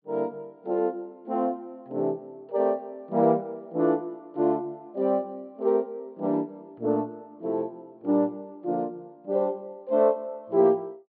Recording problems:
treble missing; nothing above 4.7 kHz

